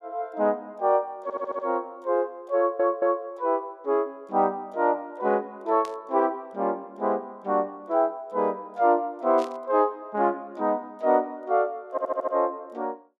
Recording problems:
stutter; at 1 s, at 2.5 s and at 12 s
burst of static; at 6 s and at 9.5 s; peak -12 dB vs average level

